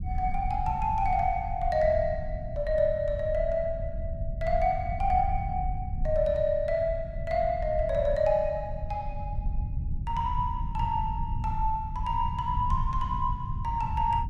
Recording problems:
low-frequency rumble; below 94 Hz, SNR 6 dB

